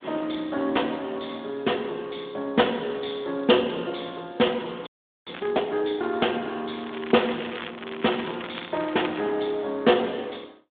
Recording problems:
telephone audio; 190 Hz to 3.6 kHz, Speex
audio freezing; at 5 s
crackle; at 5.5 s and from 7 to 9 s; loose cable, SNR 12 dB

